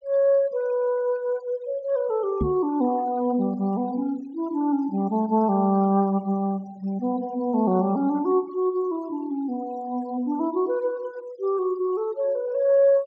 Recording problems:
treble missing; nothing above 8 kHz
denoising artefacts; signal-to-artefact ratio 26 dB
microphone thump; at 2.5 s; peak +2 dB vs average level

